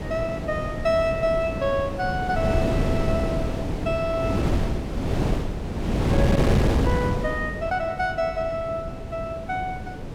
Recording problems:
wind noise; below 380 Hz, SNR 0 dB

